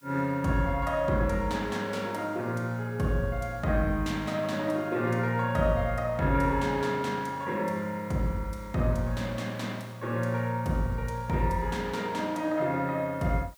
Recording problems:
hiss; slope +1 dB per octave, SNR 29 dB

